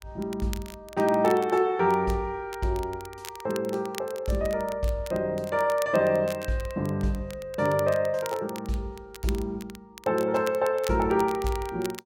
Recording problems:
crackling; vinyl, SNR 18 dB

